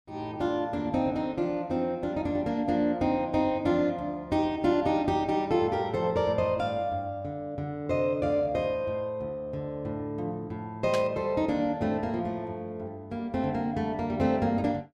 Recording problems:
static burst; at 11 s; peak -3 dB vs average level

